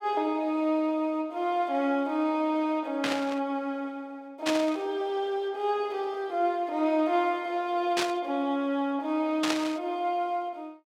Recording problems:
static burst; 4 times, first at 3 s; peak +3 dB vs average level

